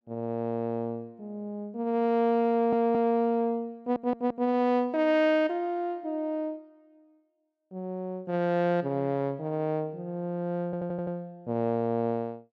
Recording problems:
audio stuttering; at 2.5 s, at 4 s and at 11 s

